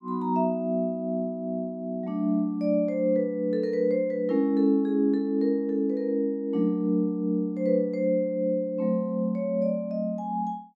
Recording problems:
none

